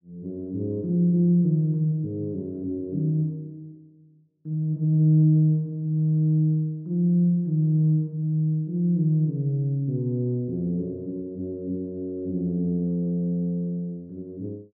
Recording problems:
treble cut off; nothing above 6.2 kHz

